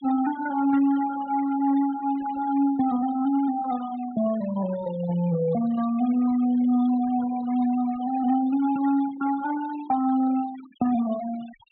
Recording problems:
treble missing; nothing above 4 kHz
noise reduction artefacts; signal-to-artefact ratio 21 dB

